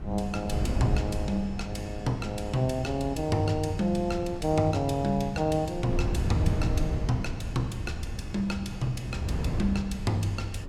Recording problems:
wind noise; below 150 Hz, SNR 4 dB

